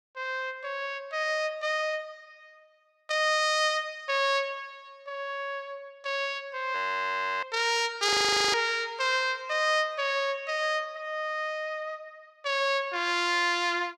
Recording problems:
audio freezing; at 7 s for 0.5 s and at 8 s

